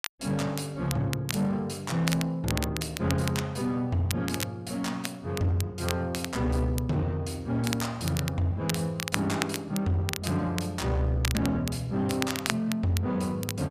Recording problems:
distortion; soft clipping, signal-to-distortion ratio 12 dB
crackle; vinyl, SNR 8 dB

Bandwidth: 14.5 kHz